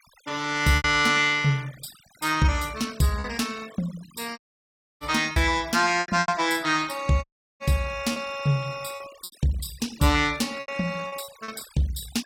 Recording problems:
denoising artefacts; signal-to-artefact ratio 19 dB
packet loss; 7% of the sound replaced, filled with repeated pitch periods
audio cutting out; at 4.5 s for 0.5 s and at 7 s

